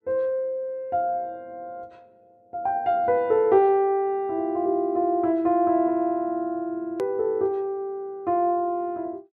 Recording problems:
click at an edit; at 7 s

